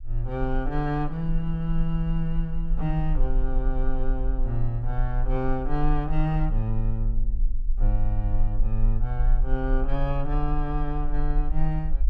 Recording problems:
rumble; below 36 Hz, strongest tone 20 Hz, SNR 0 dB

